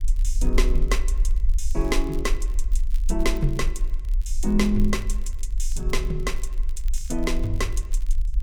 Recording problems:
low-frequency rumble; below 42 Hz, strongest tone 20 Hz, SNR 0 dB
crackle; vinyl, SNR 25 dB

